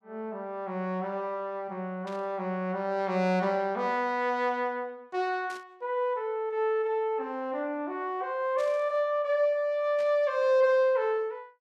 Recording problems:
static burst; 4 times, first at 2 s; peak -14 dB vs average level

